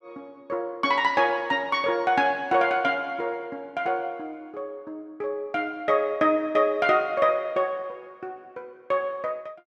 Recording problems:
none

